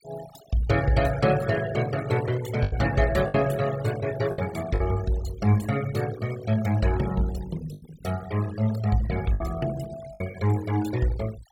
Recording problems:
denoising artefacts; signal-to-artefact ratio 15 dB
lost packets; 4% of the sound replaced, filled with the last packet

